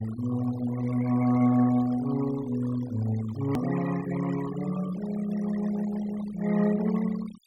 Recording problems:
noise reduction artefacts; signal-to-artefact ratio 16 dB
edit click; at 3.5 s

